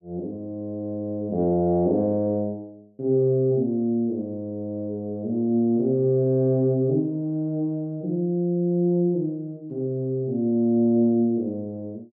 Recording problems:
none

